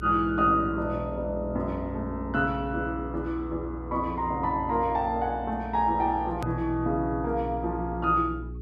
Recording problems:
hum; 60 Hz, harmonics up to 420 Hz, SNR 11 dB
edit click; at 6.5 s

